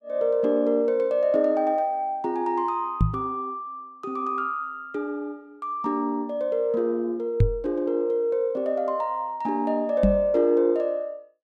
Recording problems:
microphone thump; at 3 s, at 7.5 s and at 10 s; peak +9 dB vs average level

